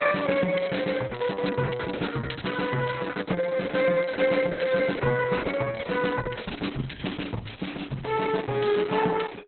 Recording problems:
lossy compression; Opus, log-spectral distance 6 dB, nothing above 4.1 kHz

